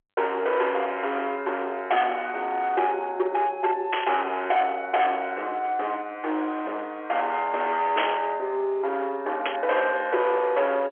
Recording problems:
phone line; 320 Hz to 3.8 kHz, G.711
distorted audio; hard clipping, signal-to-distortion ratio 9 dB
burst of static; at 4 s, at 8 s and at 9.5 s; peak +3 dB vs average level

